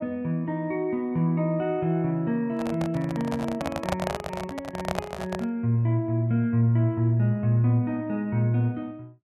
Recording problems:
microphone handling noise; from 2.5 to 5.5 s; peak +2 dB vs average level

